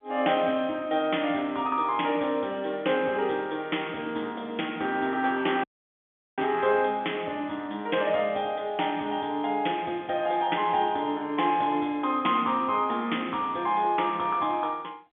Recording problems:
telephone audio; 220 Hz to 3.5 kHz, G.711
dropout; at 5.5 s for 0.5 s

